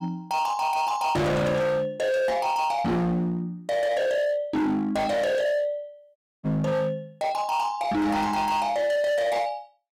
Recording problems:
distortion; hard clipping, signal-to-distortion ratio 6 dB
audio cutting out; at 6 s

